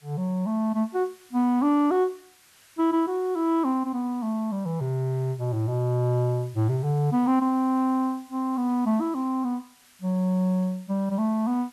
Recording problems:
hiss; slope +1 dB per octave, SNR 28 dB

